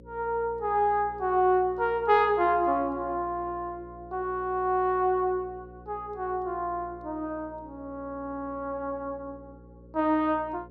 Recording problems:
hum; 60 Hz, harmonics up to 540 Hz, SNR 21 dB

